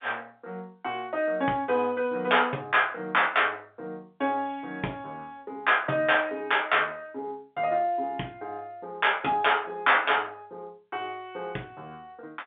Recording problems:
phone line; 240 Hz to 3.6 kHz, G.711

